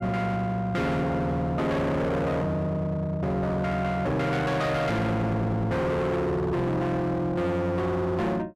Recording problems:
distortion; hard clipping, signal-to-distortion ratio 7 dB

